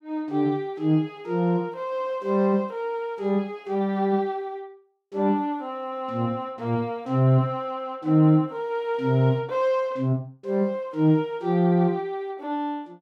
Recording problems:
none

